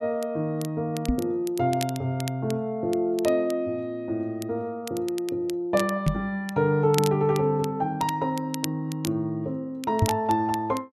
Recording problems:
crackle; vinyl, SNR 14 dB
microphone thump; at 1 s, at 6 s and at 10 s; peak +8 dB vs average level

